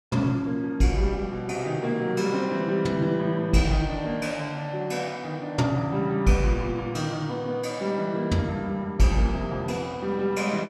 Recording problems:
none

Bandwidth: 14 kHz